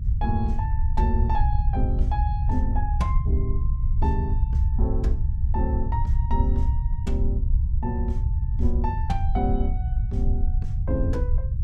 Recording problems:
rumble; below 76 Hz, SNR -6 dB

